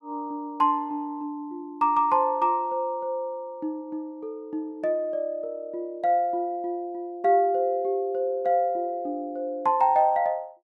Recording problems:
none

